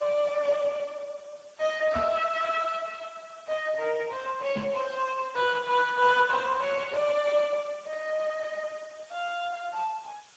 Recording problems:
lossy compression; Speex, log-spectral distance 6 dB
background hiss; slope +1 dB per octave, SNR 27 dB
microphone bump; at 2 s and at 4.5 s; peak -3 dB vs average level

